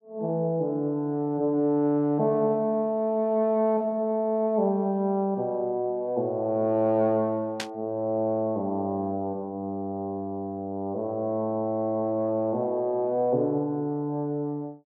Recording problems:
burst of static; at 7.5 s; peak -1 dB vs average level

